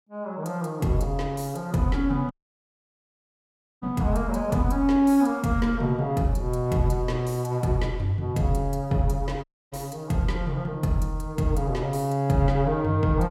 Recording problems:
dropout; at 2.5 s for 1.5 s and at 9.5 s

